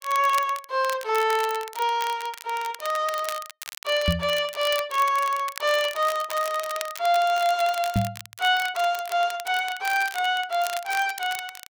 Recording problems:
crackle; vinyl, SNR 13 dB
knock on the microphone; at 4 s and at 8 s; peak +4 dB vs average level

